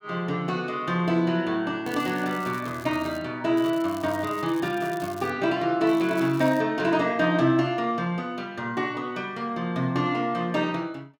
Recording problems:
crackle; from 2 to 3 s, from 3.5 to 5.5 s and at 6 s; loose cable, SNR 22 dB

